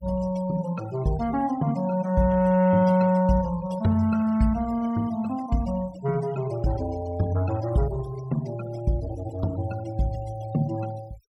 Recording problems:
noise reduction artefacts; signal-to-artefact ratio 20 dB

